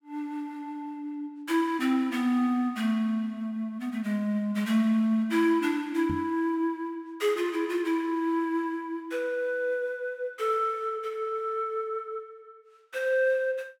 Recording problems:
microphone bump; at 6 s; peak -2 dB vs average level

